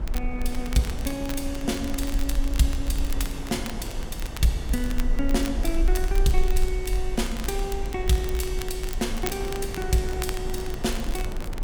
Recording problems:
rumble; below 44 Hz, strongest tone 24 Hz, SNR 3 dB
wind noise; below 480 Hz, SNR 10 dB
crackle; vinyl, SNR 12 dB

